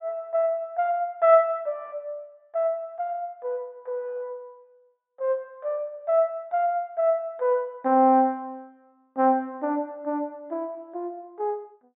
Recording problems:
treble missing; nothing above 4 kHz

